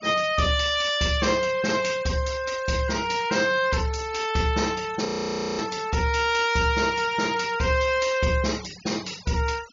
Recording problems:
low-pass filter; nothing above 7 kHz
noise reduction artefacts; signal-to-artefact ratio 17 dB
frozen audio; at 5 s for 0.5 s

